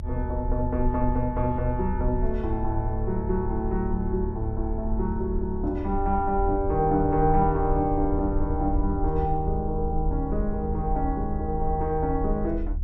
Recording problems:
rumble; below 74 Hz, SNR 5 dB

